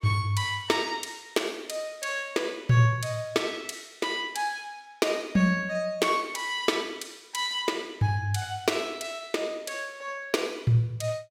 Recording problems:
none

